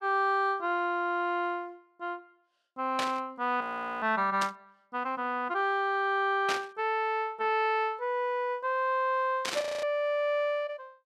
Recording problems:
burst of static; 4 times, first at 3 s; peak +1 dB vs average level
audio freezing; at 3.5 s and at 9.5 s

